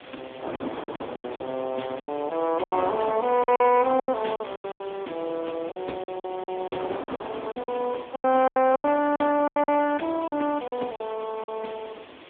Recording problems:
phone line; 220 Hz to 2.8 kHz, AMR-NB
hiss; SNR 22 dB
wind noise; below 940 Hz, SNR 14 dB
packet loss; 14% of the sound replaced, filled with silence

